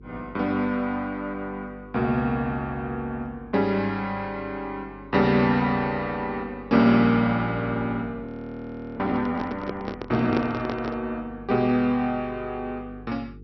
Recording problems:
treble missing; nothing above 5.8 kHz
electrical hum; 50 Hz, harmonics up to 450 Hz, SNR 21 dB
frozen audio; at 8.5 s for 0.5 s
handling noise; from 9 to 11 s; peak +1 dB vs average level

